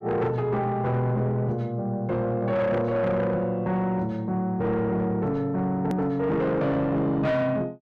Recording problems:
distorted audio; soft clipping, signal-to-distortion ratio 10 dB
edit click; at 6 s

